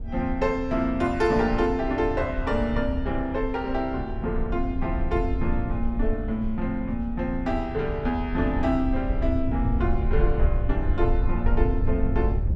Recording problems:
low-frequency rumble; below 72 Hz, SNR 3 dB

